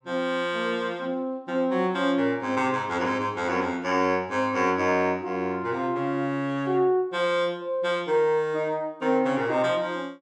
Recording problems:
none

